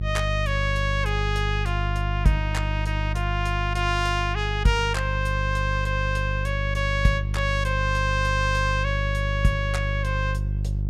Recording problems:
hum; 50 Hz, harmonics up to 350 Hz, SNR 1 dB

